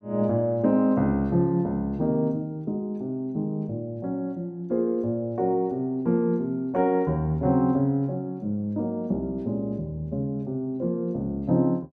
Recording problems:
none

